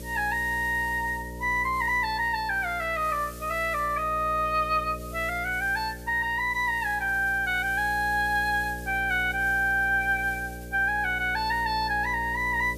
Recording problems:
hum; 60 Hz, harmonics up to 600 Hz, SNR 14 dB
background hiss; slope +2 dB per octave, SNR 21 dB

